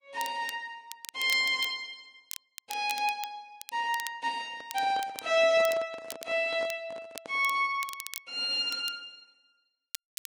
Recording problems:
codec artefacts; Vorbis, log-spectral distance 2 dB
crackle; vinyl, SNR 14 dB
microphone handling noise; from 4.5 to 7.5 s; peak -8 dB vs average level

